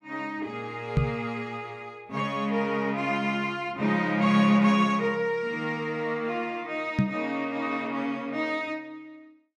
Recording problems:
microphone bump; at 1 s and at 7 s; peak +8 dB vs average level

